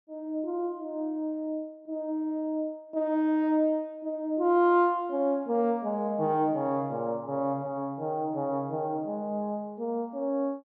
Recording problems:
none

